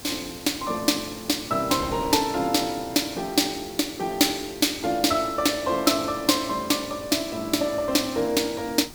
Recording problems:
hiss; slope 0 dB per octave, SNR 19 dB
wind on the microphone; below 630 Hz, SNR 20 dB

